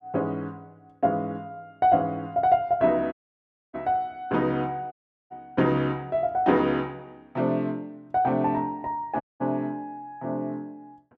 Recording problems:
dropout; at 3 s for 0.5 s, at 5 s and at 9 s

